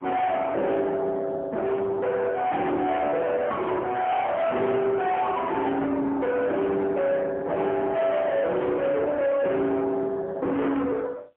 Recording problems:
telephone audio; 840 Hz to 3.5 kHz, AMR-NB, then MP3
distorted audio; soft clipping, signal-to-distortion ratio 6 dB

